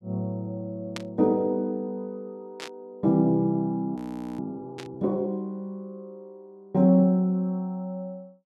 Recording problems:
static burst; at 1 s, at 2.5 s and at 5 s; peak -5 dB vs average level
frozen audio; at 4 s

